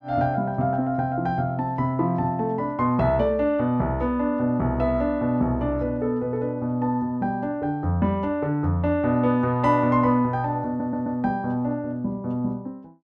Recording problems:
audio stuttering; at 11 s

